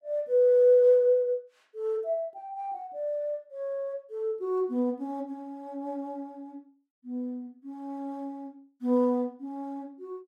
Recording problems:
none

